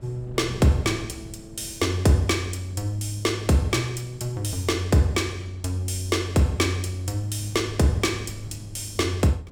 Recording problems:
wind noise; below 210 Hz, SNR 19 dB

